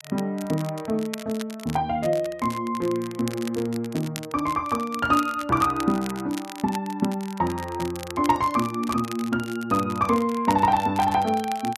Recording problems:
crackle; vinyl, SNR 16 dB

